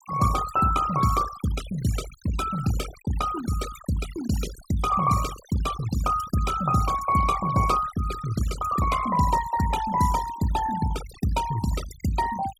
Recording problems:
noise reduction artefacts; signal-to-artefact ratio 12 dB

